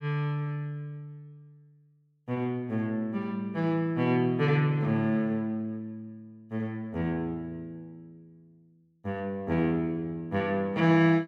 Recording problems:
none

